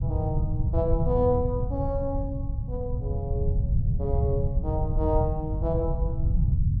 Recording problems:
low-frequency rumble; below 120 Hz, SNR -2 dB

